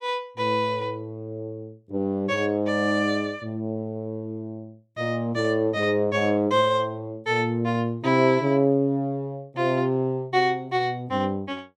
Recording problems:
none

